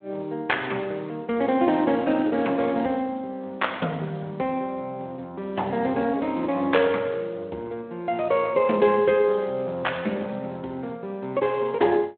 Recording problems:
phone line; 220 Hz to 3.4 kHz, Speex

